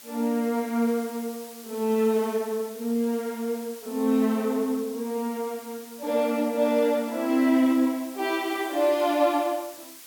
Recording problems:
hiss; slope +1 dB per octave, SNR 18 dB

